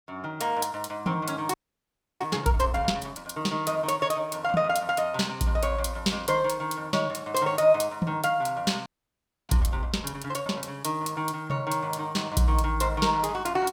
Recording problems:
frozen audio; at 1.5 s for 0.5 s and at 9 s for 0.5 s

